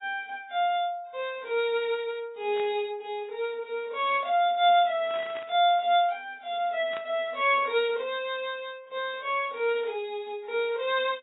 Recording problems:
lossy compression; AAC, log-spectral distance 2 dB, nothing above 3.5 kHz
burst of static; at 2.5 s, at 5 s and at 7 s; peak -10 dB vs average level

